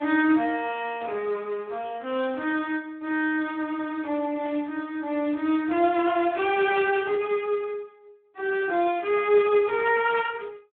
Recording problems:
phone line; 260 Hz to 3.5 kHz, Speex
burst of static; 4 times, first at 1 s; peak -15 dB vs average level

